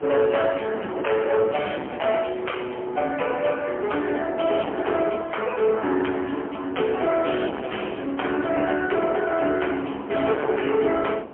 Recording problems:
telephone audio; 220 Hz to 3.2 kHz, AMR-NB, then MP3
distortion; hard clipping, signal-to-distortion ratio 6 dB
wind noise; below 850 Hz, SNR 16 dB

